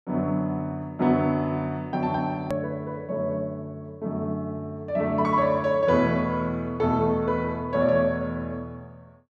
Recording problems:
edit click; at 2.5 s

